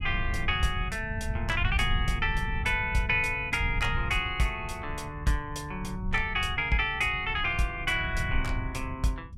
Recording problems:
rumble; below 100 Hz, SNR 7 dB

